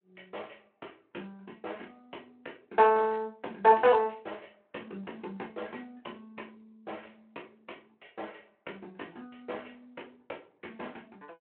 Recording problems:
phone line; 320 Hz to 3.2 kHz, Speex

